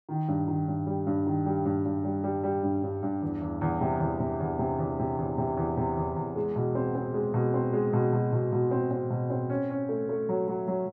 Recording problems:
none

